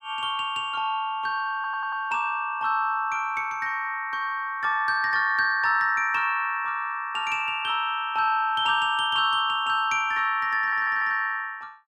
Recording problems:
audio stuttering; at 1.5 s and at 11 s

